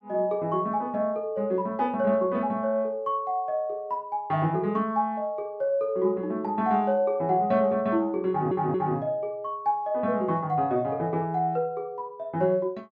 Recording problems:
audio stuttering; at 8.5 s

